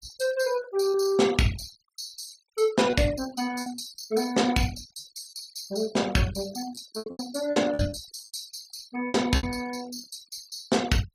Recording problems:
denoising artefacts; signal-to-artefact ratio 17 dB
packet loss; 8% of the sound replaced, filled with repeated pitch periods

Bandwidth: 15.5 kHz